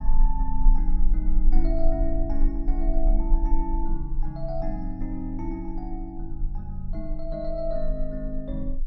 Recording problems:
rumble; below 34 Hz, strongest tone 22 Hz, SNR -4 dB

